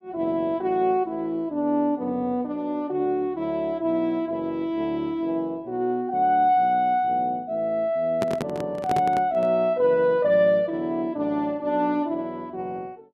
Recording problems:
microphone handling noise; from 8 to 9.5 s; peak 0 dB vs average level

